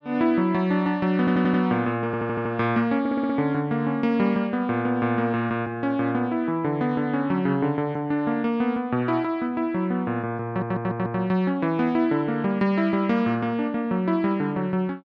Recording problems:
stutter; 4 times, first at 1 s

